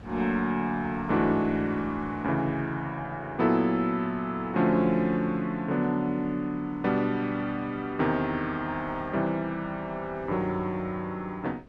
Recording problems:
wind on the microphone; below 400 Hz, SNR 21 dB

